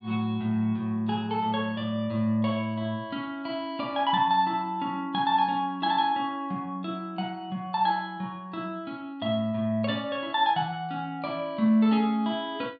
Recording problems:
treble missing; nothing above 5.1 kHz

